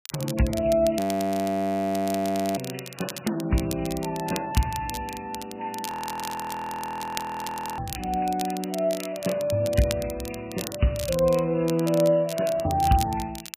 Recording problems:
codec artefacts; MP3, log-spectral distance 5 dB, nothing above 15.1 kHz
crackling; vinyl, SNR 12 dB
audio freezing; at 1 s for 1.5 s and at 6 s for 2 s

